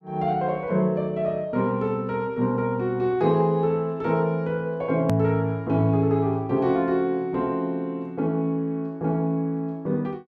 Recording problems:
edit click; at 5 s

